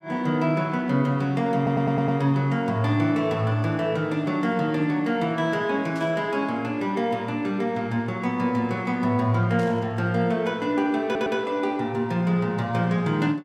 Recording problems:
stutter; at 1.5 s and at 11 s
static burst; at 6 s and at 9.5 s; peak -15 dB vs average level

